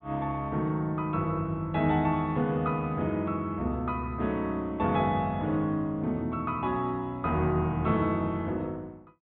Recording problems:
treble missing; nothing above 4 kHz

